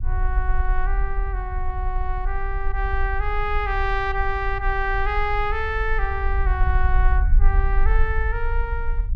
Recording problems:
low-frequency rumble; below 50 Hz, SNR -1 dB

